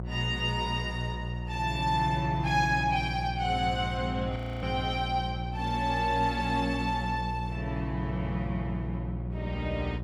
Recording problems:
electrical hum; 60 Hz, harmonics up to 720 Hz, SNR 5 dB
audio freezing; at 4.5 s

